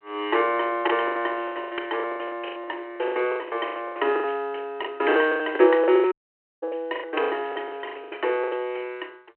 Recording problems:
telephone audio; 300 Hz to 3.2 kHz, G.726
packet loss; 22% of the sound replaced, filled with the last packet
audio cutting out; at 6 s for 0.5 s

